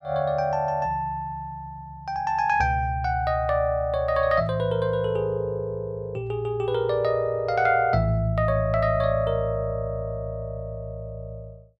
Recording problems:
none

